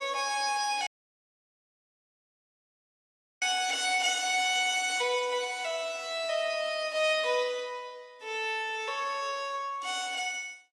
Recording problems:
codec artefacts; AAC, log-spectral distance 2 dB
dropout; at 1 s for 2.5 s

